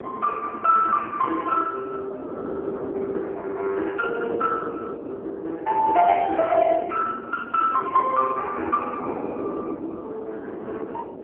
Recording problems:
phone line; 280 Hz to 2.8 kHz, AMR-NB
wind noise; below 490 Hz, SNR 10 dB

